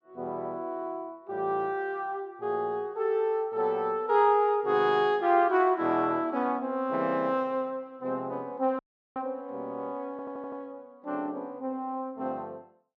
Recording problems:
dropout; at 9 s
audio stuttering; at 10 s

